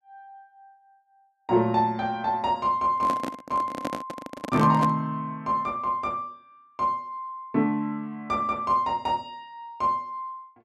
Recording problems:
microphone handling noise; from 3 to 5 s; peak +1 dB vs average level

